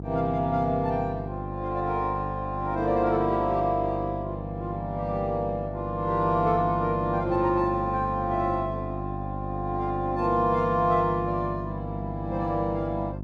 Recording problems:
hum; 50 Hz, harmonics up to 700 Hz, SNR 8 dB

